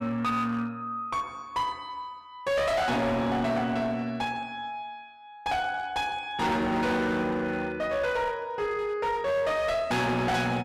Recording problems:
distortion; hard clipping, uneven, signal-to-distortion ratio 7 dB

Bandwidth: 14.5 kHz